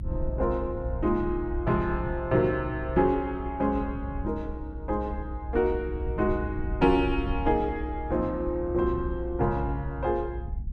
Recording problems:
rumble; below 78 Hz, SNR 7 dB

